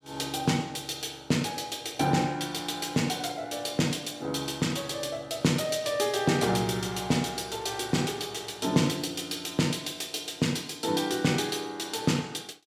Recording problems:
none

